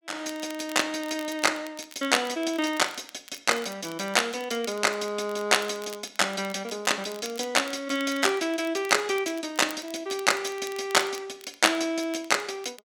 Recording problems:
crackling; vinyl, SNR 20 dB

